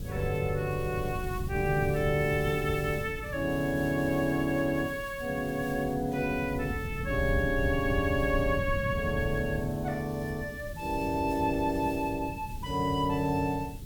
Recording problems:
background hiss; SNR 20 dB
wind noise; below 160 Hz, SNR 8 dB

